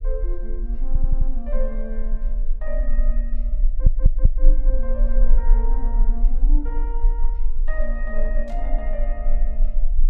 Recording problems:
low-frequency rumble; below 32 Hz, strongest tone 22 Hz, SNR -12 dB
audio stuttering; at 1 s and at 3.5 s
burst of static; at 8.5 s; peak -11 dB vs average level

